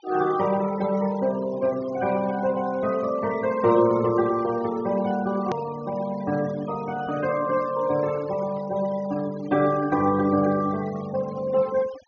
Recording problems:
low-pass filter; nothing above 6.6 kHz
denoising artefacts; signal-to-artefact ratio 18 dB
click at an edit; at 5.5 s

